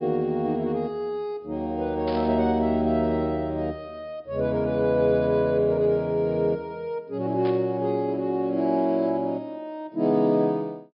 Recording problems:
treble missing; nothing above 5.5 kHz
static burst; at 2 s and at 7.5 s; peak -11 dB vs average level

